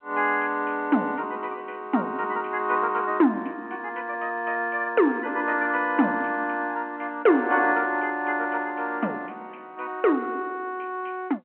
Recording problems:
phone line; 220 Hz to 3.1 kHz, G.711

